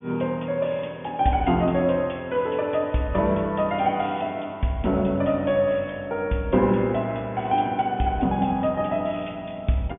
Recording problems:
treble missing; nothing above 3.5 kHz

